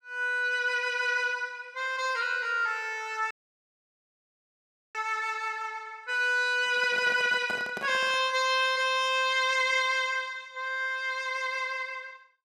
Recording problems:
audio cutting out; at 3.5 s for 1.5 s
microphone handling noise; from 6.5 to 8 s; peak -7 dB vs average level

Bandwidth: 14.5 kHz